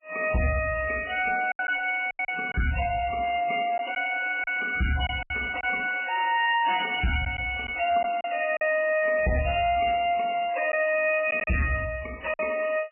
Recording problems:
codec artefacts; MP3, log-spectral distance 8 dB, nothing above 2.5 kHz
distorted audio; hard clipping, uneven, signal-to-distortion ratio 11 dB
packet loss; 5% of the sound replaced, filled with silence

